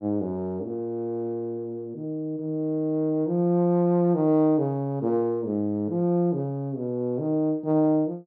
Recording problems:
none

